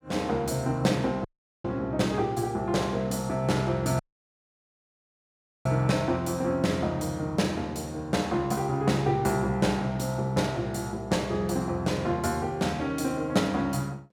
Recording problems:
audio cutting out; at 1.5 s and at 4 s for 1.5 s

